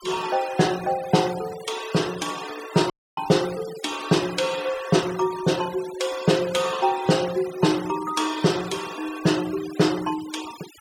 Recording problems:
denoising artefacts; signal-to-artefact ratio 15 dB
dropout; at 3 s

